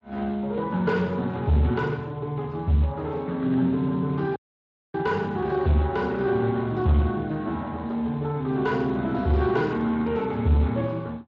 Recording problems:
lossy compression; Speex, log-spectral distance 2 dB
distorted audio; soft clipping, signal-to-distortion ratio 10 dB
dropout; at 4.5 s for 0.5 s

